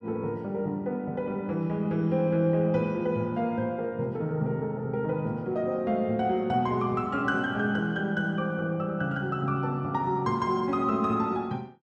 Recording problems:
none

